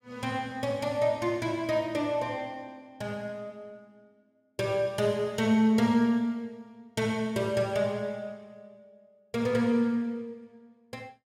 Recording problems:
none

